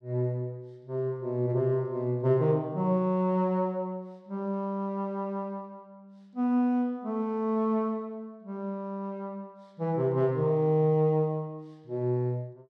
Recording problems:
none

